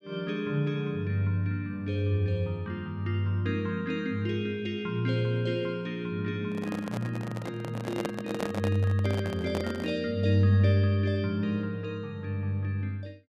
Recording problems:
handling noise; from 6.5 to 10 s; peak +1 dB vs average level

